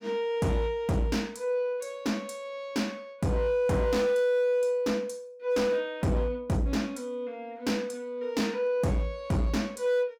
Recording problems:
distorted audio; hard clipping, signal-to-distortion ratio 12 dB

